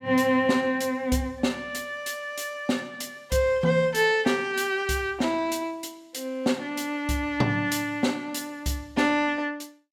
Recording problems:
none

